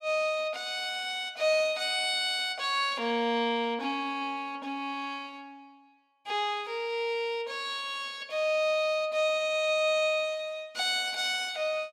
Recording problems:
none

